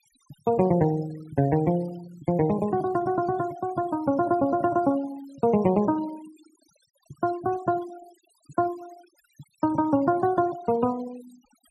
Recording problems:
noise reduction artefacts; signal-to-artefact ratio 23 dB

